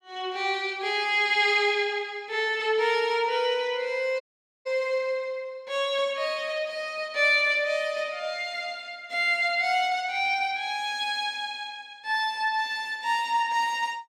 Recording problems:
dropout; at 4 s

